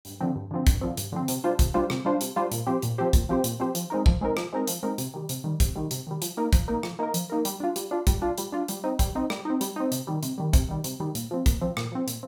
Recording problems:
none

